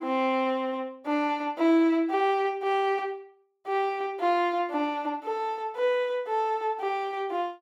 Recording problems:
none

